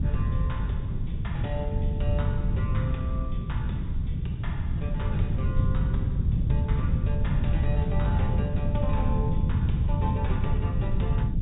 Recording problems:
low-pass filter; nothing above 4 kHz
hiss; SNR 27 dB
wind on the microphone; below 140 Hz, SNR -10 dB

